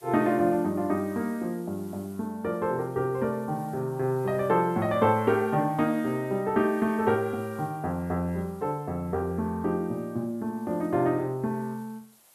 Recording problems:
hiss; SNR 27 dB

